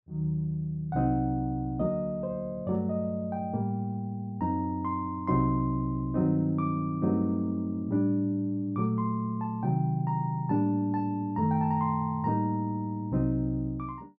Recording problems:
none

